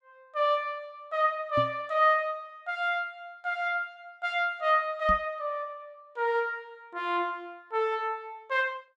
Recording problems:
microphone bump; at 1.5 s and at 5 s; peak -2 dB vs average level

